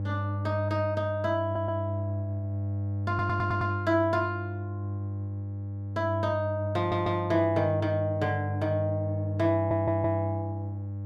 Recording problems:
hum; 50 Hz, harmonics up to 600 Hz, SNR 3 dB
audio stuttering; 4 times, first at 1.5 s

